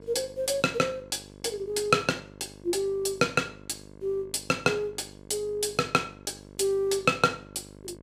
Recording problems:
mains hum; 50 Hz, harmonics up to 2.1 kHz, SNR 21 dB

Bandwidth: 15.5 kHz